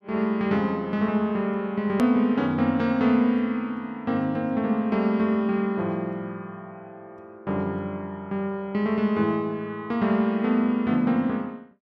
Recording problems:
click at an edit; at 2 s

